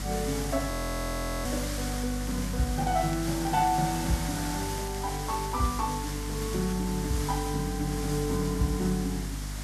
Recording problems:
hum; 50 Hz, harmonics up to 300 Hz, SNR 6 dB
background hiss; slope -1 dB per octave, SNR 6 dB
frozen audio; at 0.5 s for 0.5 s
crackle; from 2 to 7 s; loose cable, SNR 21 dB

